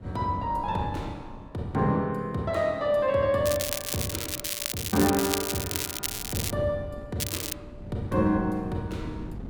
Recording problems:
wind on the microphone; below 230 Hz, SNR 15 dB
crackling; from 3.5 to 6.5 s and at 7 s; loose cable, SNR 3 dB

